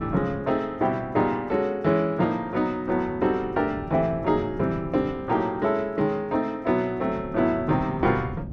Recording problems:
wind noise; below 220 Hz, SNR 14 dB

